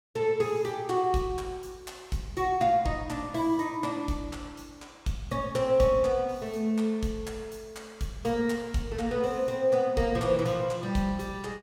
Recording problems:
none

